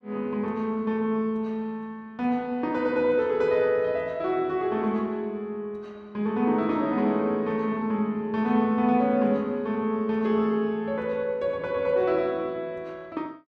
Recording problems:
none

